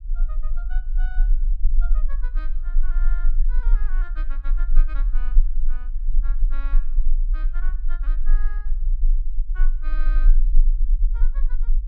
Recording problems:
rumble; below 32 Hz, strongest tone 24 Hz, SNR -20 dB

